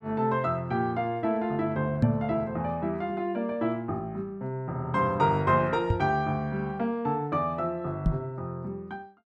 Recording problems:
knock on the microphone; at 2 s, at 6 s and at 8 s; peak +8 dB vs average level

